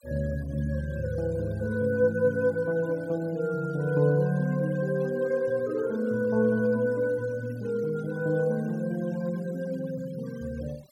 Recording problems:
noise reduction artefacts; signal-to-artefact ratio 25 dB

